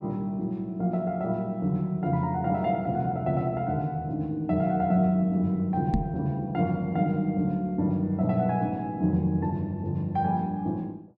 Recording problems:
microphone bump; at 6 s; peak +5 dB vs average level

